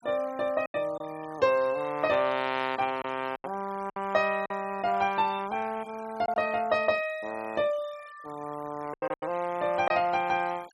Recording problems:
noise reduction artefacts; signal-to-artefact ratio 22 dB
packet loss; 5% of the sound replaced, filled with silence

